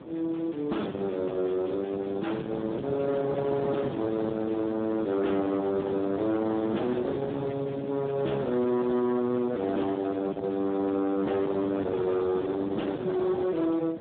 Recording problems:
telephone audio; 150 Hz to 3.6 kHz, Speex
distorted audio; soft clipping, signal-to-distortion ratio 6 dB
wind noise; below 620 Hz, SNR 9 dB

